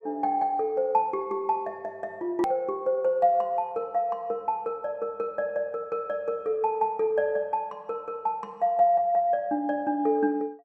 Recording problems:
click at an edit; at 2.5 s

